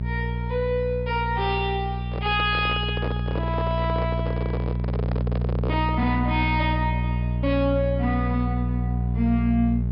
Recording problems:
treble cut off; nothing above 5.5 kHz
distortion; soft clipping, signal-to-distortion ratio 11 dB
mains hum; 60 Hz, harmonics up to 420 Hz, SNR 1 dB
microphone handling noise; from 2 to 6 s; peak 0 dB vs average level

